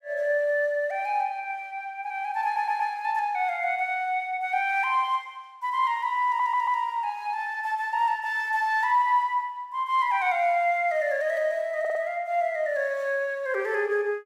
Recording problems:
stutter; at 2.5 s, at 6.5 s and at 12 s

